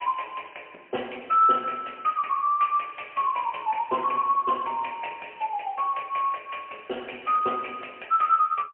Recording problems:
phone line; 260 Hz to 3.1 kHz, AMR-NB, then MP3

